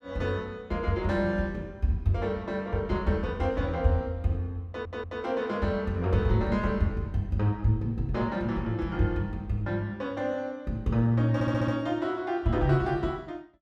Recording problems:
stutter; at 4.5 s and at 11 s

